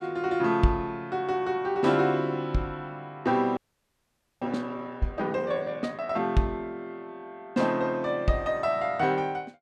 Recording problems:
audio freezing; at 3.5 s for 1 s

